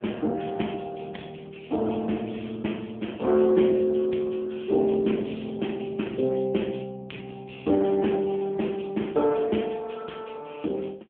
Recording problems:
telephone audio; 150 Hz to 3.4 kHz, AMR-NB

